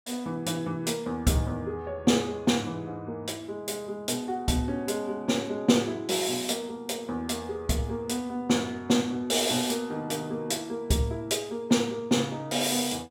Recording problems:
none

